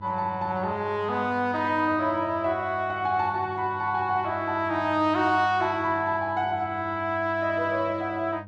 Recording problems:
electrical hum; 50 Hz, harmonics up to 800 Hz, SNR 17 dB

